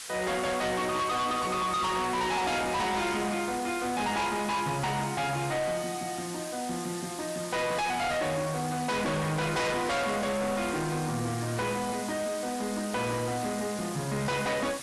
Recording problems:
lossy codec; AAC, log-spectral distance 9 dB, nothing above 12 kHz
distorted audio; soft clipping, signal-to-distortion ratio 6 dB
hiss; slope +2 dB per octave, SNR 11 dB

